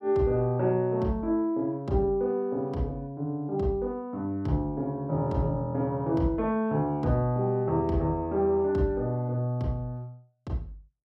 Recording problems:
none

